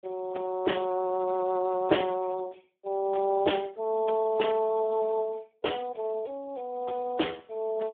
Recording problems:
telephone audio; 300 Hz to 3.4 kHz, Speex

